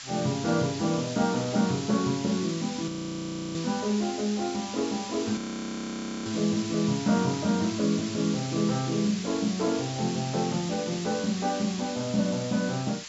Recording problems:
low-pass filter; nothing above 8 kHz
background hiss; slope +4 dB per octave, SNR 10 dB
audio freezing; at 3 s for 0.5 s and at 5.5 s for 1 s

